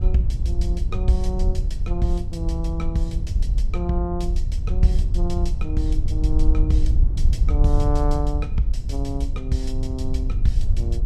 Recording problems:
wind on the microphone; below 64 Hz, SNR -4 dB

